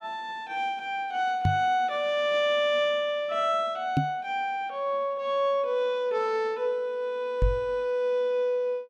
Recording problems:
microphone bump; at 1.5 s, at 4 s and at 7.5 s; peak +5 dB vs average level

